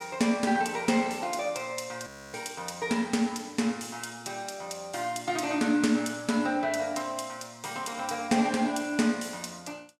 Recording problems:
frozen audio; at 2 s

